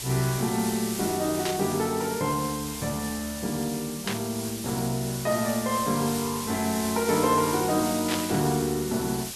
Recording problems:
background hiss; SNR 7 dB
burst of static; at 1.5 s, at 4 s and at 8 s; peak +1 dB vs average level

